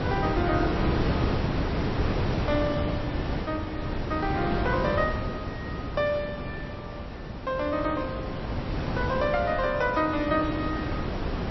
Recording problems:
codec artefacts; MP3, log-spectral distance 3 dB, nothing above 5.7 kHz
wind on the microphone; below 530 Hz, SNR 1 dB

